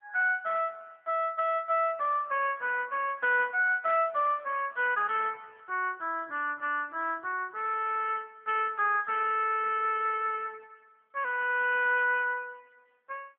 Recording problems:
telephone audio; 320 Hz to 3.3 kHz, AMR-NB

